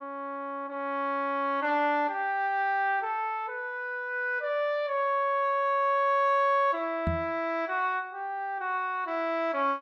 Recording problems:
microphone bump; at 7 s; peak +1 dB vs average level

